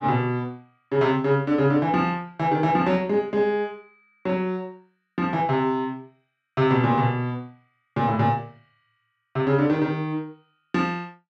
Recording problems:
none

